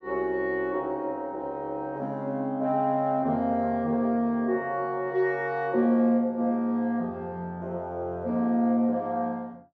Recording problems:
none

